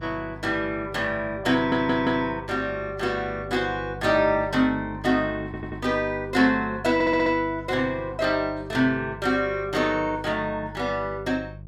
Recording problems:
hum; 50 Hz, harmonics up to 500 Hz, SNR 16 dB
audio stuttering; at 1.5 s, at 5.5 s and at 7 s

